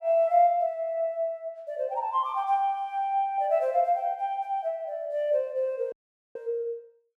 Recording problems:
audio cutting out; at 6 s

